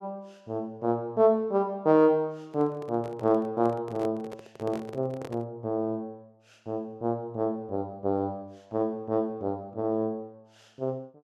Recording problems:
microphone handling noise; from 2.5 to 5.5 s; peak -7 dB vs average level

